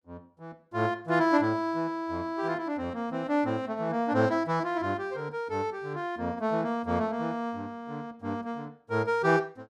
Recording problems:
none

